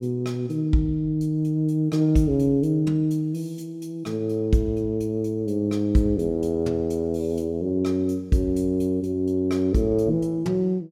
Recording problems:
none

